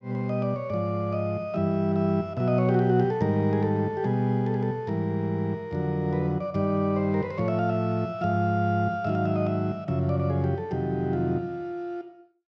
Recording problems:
none

